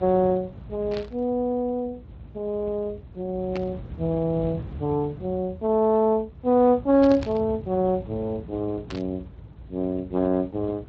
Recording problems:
lossy codec; Speex, log-spectral distance 2 dB
low-frequency rumble; below 180 Hz, SNR 15 dB
static burst; 4 times, first at 1 s; peak -7 dB vs average level

